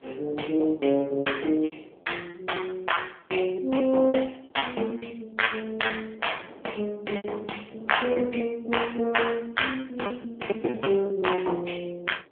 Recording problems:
phone line; 280 Hz to 3.4 kHz, AMR-NB
wind on the microphone; below 590 Hz, SNR 23 dB
lost packets; 13% of the sound replaced, filled with repeated pitch periods

